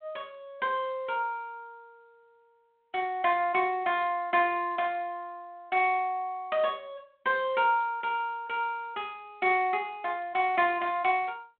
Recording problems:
telephone audio; 240 Hz to 3.7 kHz, G.726

